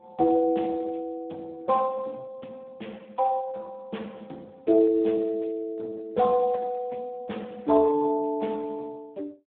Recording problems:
phone line; 170 Hz to 3.5 kHz, Speex

